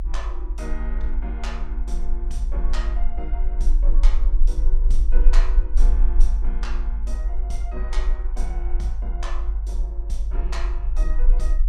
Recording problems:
low-frequency rumble; below 46 Hz, strongest tone 20 Hz, SNR -12 dB

